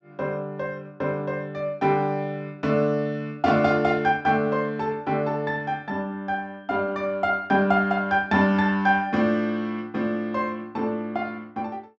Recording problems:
treble missing; nothing above 8 kHz

